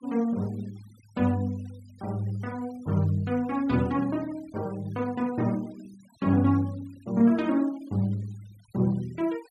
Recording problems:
denoising artefacts; signal-to-artefact ratio 26 dB

